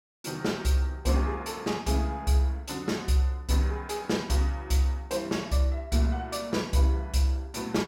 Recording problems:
none

